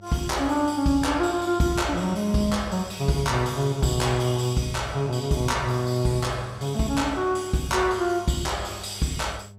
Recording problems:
mains hum; 50 Hz, harmonics up to 700 Hz, SNR 20 dB

